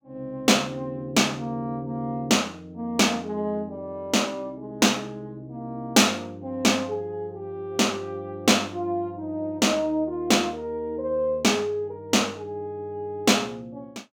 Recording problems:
none

